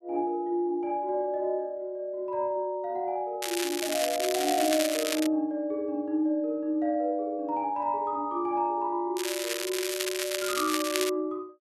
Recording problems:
crackle; from 3.5 to 5.5 s and from 9 to 11 s; loose cable, SNR 3 dB

